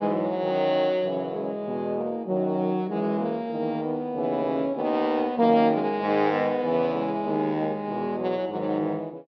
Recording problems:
treble missing; nothing above 5.8 kHz

